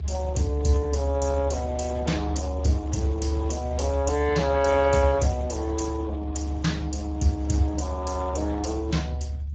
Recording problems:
lossy compression; Speex, log-spectral distance 3 dB, nothing above 7.3 kHz
low-frequency rumble; below 74 Hz, strongest tone 72 Hz, SNR 5 dB

